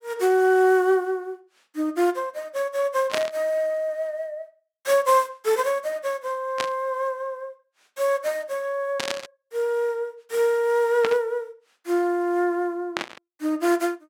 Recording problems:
burst of static; 5 times, first at 3 s; peak +1 dB vs average level

